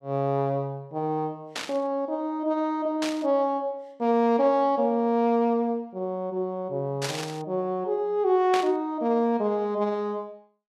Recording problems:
static burst; 4 times, first at 1.5 s; peak -1 dB vs average level

